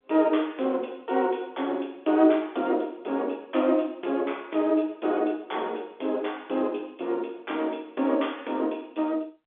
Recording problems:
phone line; 240 Hz to 4 kHz, G.711

